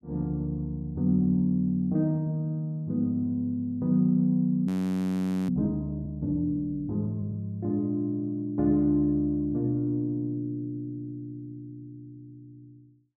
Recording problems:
audio freezing; at 4.5 s for 1 s

